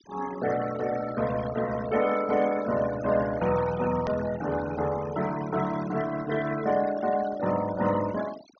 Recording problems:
low-pass filter; nothing above 6.3 kHz
denoising artefacts; signal-to-artefact ratio 13 dB
edit click; at 4 s

